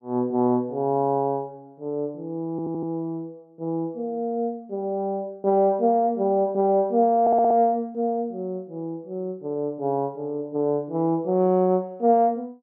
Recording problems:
audio stuttering; at 2.5 s and at 7 s

